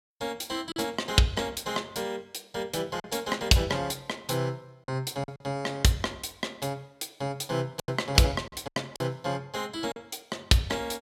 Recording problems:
packet loss; 4% of the sound replaced, filled with silence

